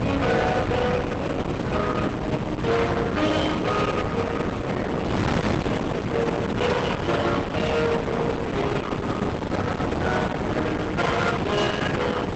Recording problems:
lossy codec; Opus, log-spectral distance 4 dB, nothing above 8 kHz
distorted audio; soft clipping, signal-to-distortion ratio 8 dB
wind noise; below 820 Hz, SNR 1 dB

